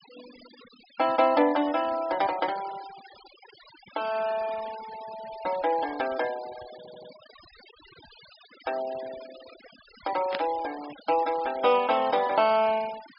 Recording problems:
treble missing; nothing above 5.5 kHz
denoising artefacts; signal-to-artefact ratio 18 dB
stutter; at 7 s
static burst; at 10 s; peak -2 dB vs average level

